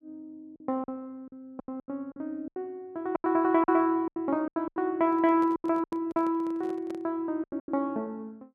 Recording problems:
packet loss; 13% of the sound replaced, filled with silence
microphone handling noise; from 5 to 7 s; peak -11 dB vs average level

